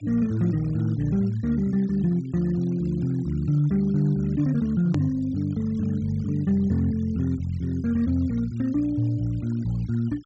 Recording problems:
low-pass filter; nothing above 8 kHz
denoising artefacts; signal-to-artefact ratio 27 dB
click at an edit; at 5 s

